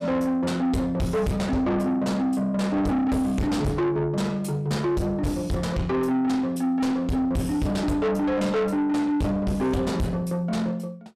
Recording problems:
distorted audio; soft clipping, signal-to-distortion ratio 8 dB

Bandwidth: 14.5 kHz